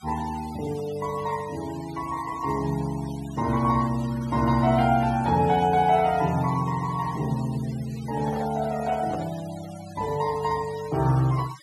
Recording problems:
noise reduction artefacts; signal-to-artefact ratio 19 dB
handling noise; from 8 to 9.5 s; peak -6 dB vs average level

